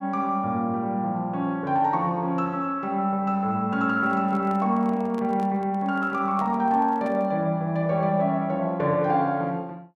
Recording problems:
microphone handling noise; from 4 to 7.5 s; peak -11 dB vs average level

